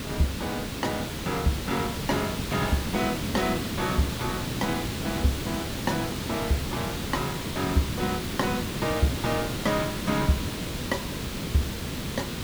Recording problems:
hiss; SNR 2 dB

